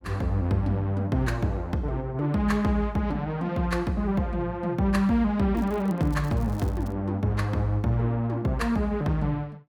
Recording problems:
crackle; from 5.5 to 7 s; loose cable, SNR 26 dB

